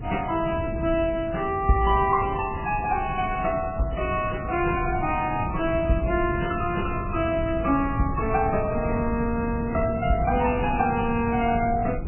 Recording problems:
codec artefacts; MP3, log-spectral distance 4 dB, nothing above 2.7 kHz
wind noise; below 190 Hz, SNR 8 dB

